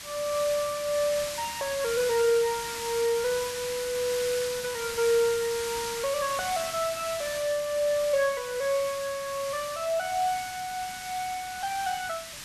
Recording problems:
background hiss; slope +2 dB per octave, SNR 7 dB

